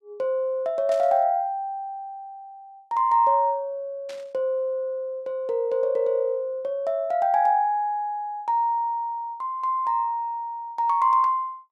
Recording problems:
static burst; at 1 s and at 4 s; peak -14 dB vs average level

